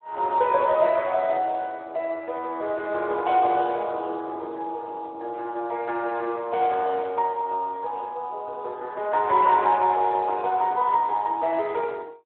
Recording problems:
telephone audio; 320 Hz to 3.8 kHz, Speex

